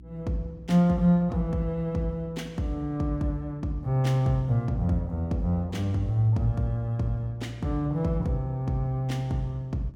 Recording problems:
electrical hum; 60 Hz, harmonics up to 360 Hz, SNR 21 dB

